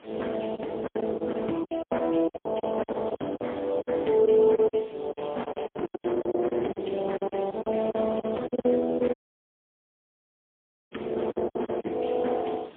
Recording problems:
telephone audio; 170 Hz to 3.5 kHz, AMR-NB, then MP3
hiss; SNR 30 dB
wind noise; below 800 Hz, SNR 22 dB
lost packets; 15% of the sound replaced, filled with silence
dropout; at 9 s for 2 s

